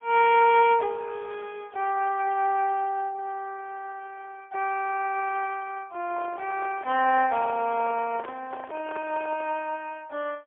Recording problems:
telephone audio; 320 Hz to 3.2 kHz, AMR-NB, then MP3
microphone handling noise; from 6 to 9.5 s; peak -9 dB vs average level

